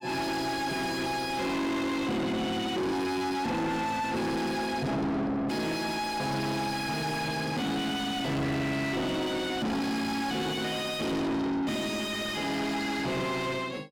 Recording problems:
distorted audio; soft clipping, signal-to-distortion ratio 6 dB

